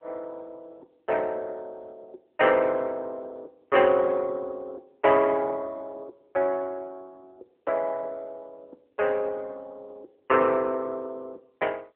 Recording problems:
telephone audio; 340 Hz to 3.2 kHz, AMR-NB

